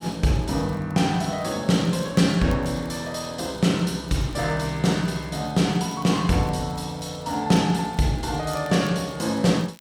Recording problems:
crackling; vinyl, SNR 28 dB

